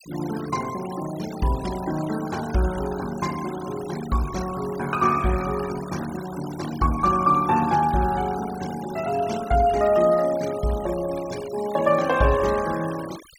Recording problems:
noise reduction artefacts; signal-to-artefact ratio 16 dB

